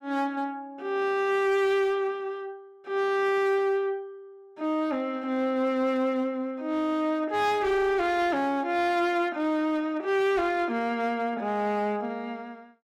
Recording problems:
distorted audio; hard clipping, signal-to-distortion ratio 12 dB

